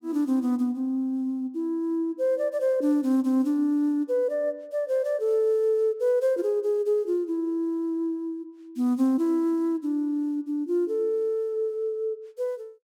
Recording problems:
none

